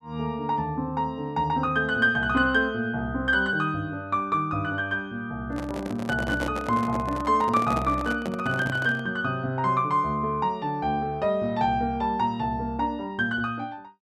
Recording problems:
microphone handling noise; from 5.5 to 9 s; peak -1 dB vs average level

